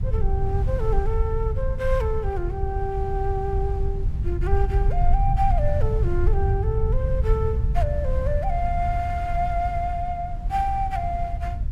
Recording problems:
low-frequency rumble; below 84 Hz, SNR -2 dB
wind on the microphone; below 90 Hz, SNR 10 dB

